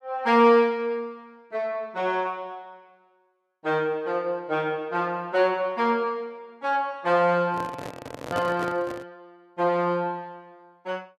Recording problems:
microphone handling noise; from 7.5 to 9 s; peak -3 dB vs average level

